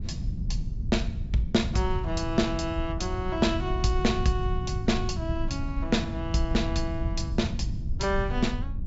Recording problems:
treble missing; nothing above 8 kHz
low-frequency rumble; below 120 Hz, SNR 5 dB
wind noise; below 86 Hz, SNR 10 dB

